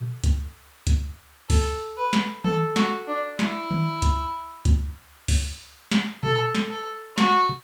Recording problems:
hiss; SNR 27 dB

